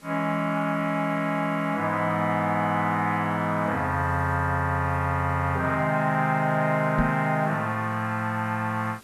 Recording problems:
hiss; SNR 27 dB
microphone bump; at 7 s; peak +3 dB vs average level

